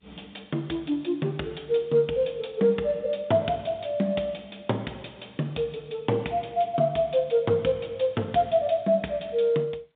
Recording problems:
phone line; 150 Hz to 3.7 kHz, G.711

